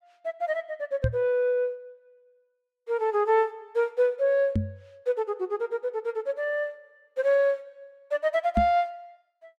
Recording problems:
knock on the microphone; at 1 s, at 4.5 s and at 8.5 s; peak +4 dB vs average level

